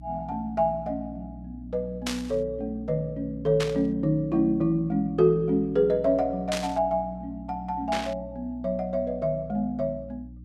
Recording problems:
hum; 60 Hz, harmonics up to 300 Hz, SNR 17 dB
burst of static; 4 times, first at 2 s; peak 0 dB vs average level

